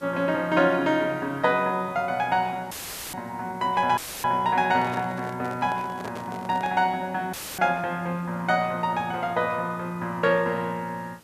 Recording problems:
background hiss; slope -3 dB per octave, SNR 29 dB
audio cutting out; at 2.5 s, at 4 s and at 7.5 s; filled with static
handling noise; from 4.5 to 7 s; peak -7 dB vs average level

